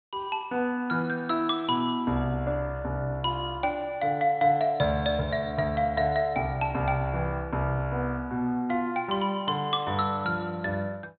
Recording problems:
treble cut off; nothing above 4 kHz

